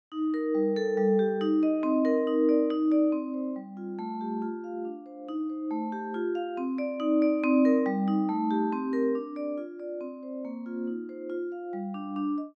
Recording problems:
none

